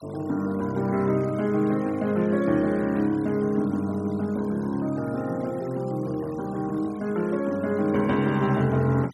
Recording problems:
noise reduction artefacts; signal-to-artefact ratio 24 dB

